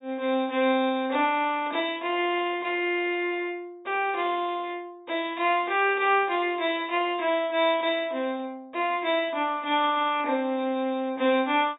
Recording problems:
low-pass filter; nothing above 4 kHz

